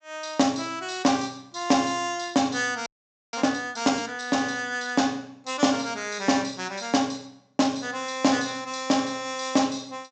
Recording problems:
treble cut off; nothing above 8 kHz
frozen audio; at 3 s

